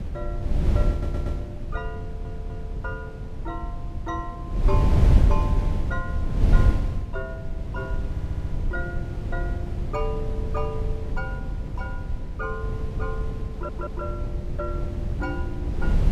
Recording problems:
wind noise; below 100 Hz, SNR -8 dB
stutter; 4 times, first at 1 s

